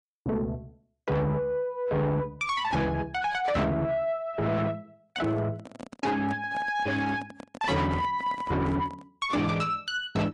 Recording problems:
lossy codec; AAC, log-spectral distance 2 dB, nothing above 10.1 kHz
distorted audio; soft clipping, signal-to-distortion ratio 8 dB
microphone handling noise; from 5 to 9 s; peak -7 dB vs average level

